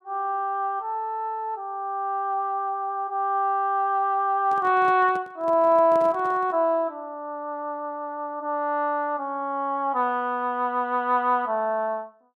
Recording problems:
handling noise; from 4.5 to 6.5 s; peak -11 dB vs average level

